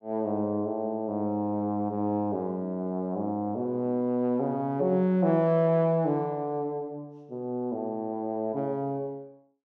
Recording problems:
none

